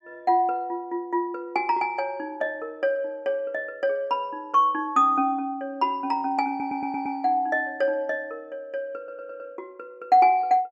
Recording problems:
stutter; at 6.5 s and at 9 s

